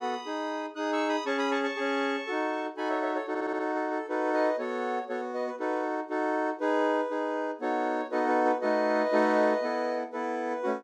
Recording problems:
stutter; at 3.5 s

